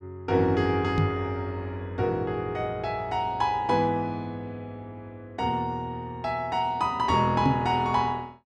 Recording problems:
microphone bump; at 1 s and at 7.5 s; peak +6 dB vs average level

